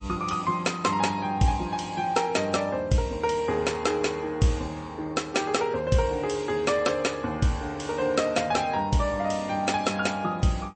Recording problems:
lossy compression; MP3, log-spectral distance 3 dB, nothing above 8.2 kHz

